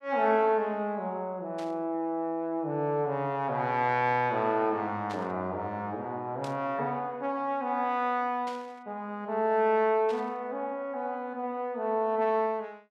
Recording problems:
static burst; 5 times, first at 1.5 s; peak -11 dB vs average level

